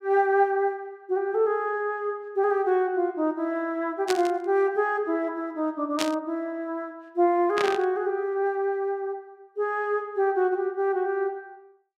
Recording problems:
static burst; at 4 s, at 6 s and at 7.5 s; peak +2 dB vs average level

